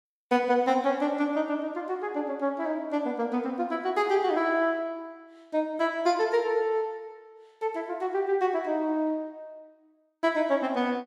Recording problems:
none

